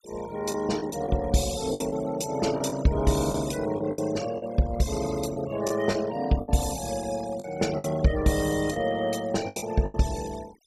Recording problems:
noise reduction artefacts; signal-to-artefact ratio 15 dB
lost packets; 7% of the sound replaced, filled with the last packet

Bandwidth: 15 kHz